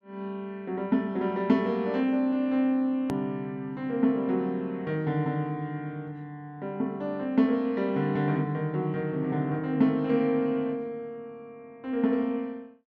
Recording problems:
click at an edit; at 3 s

